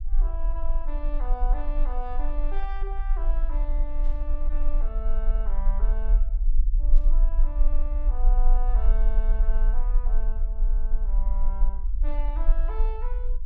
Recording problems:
rumble; below 36 Hz, strongest tone 20 Hz, SNR -13 dB
burst of static; at 4 s and at 7 s; peak -15 dB vs average level

